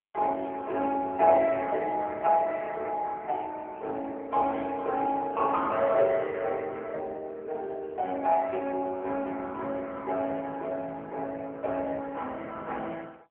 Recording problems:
telephone audio; 320 Hz to 2.5 kHz, AMR-NB

